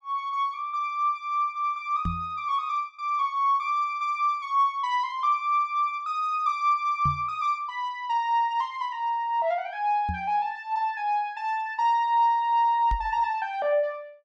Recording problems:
microphone bump; 4 times, first at 2 s; peak -1 dB vs average level

